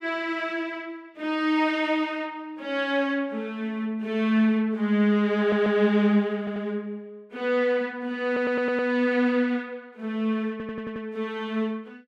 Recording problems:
stutter; 4 times, first at 5.5 s

